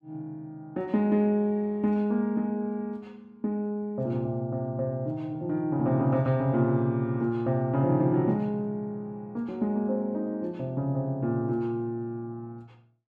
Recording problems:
none

